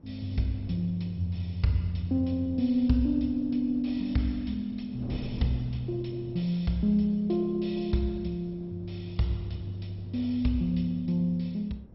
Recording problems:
lossy codec; MP2, log-spectral distance 3 dB, nothing above 5.5 kHz
wind noise; below 280 Hz, SNR 18 dB

